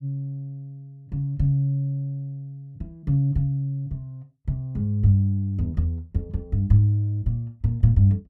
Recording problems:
none

